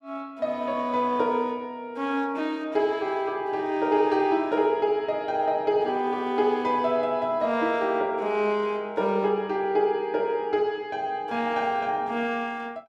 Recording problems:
none

